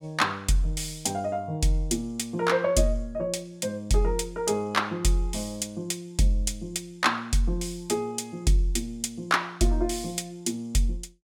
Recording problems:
none

